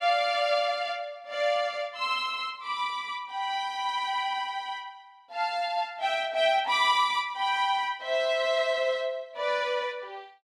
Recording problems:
none

